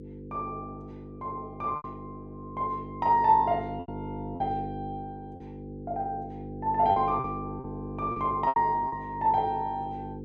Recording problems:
hum; 50 Hz, harmonics up to 500 Hz, SNR 11 dB
lost packets; 6% of the sound replaced, filled with repeated pitch periods

